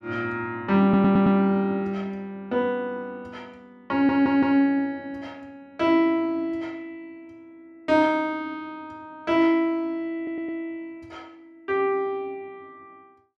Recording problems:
audio stuttering; at 1 s, at 4 s and at 10 s

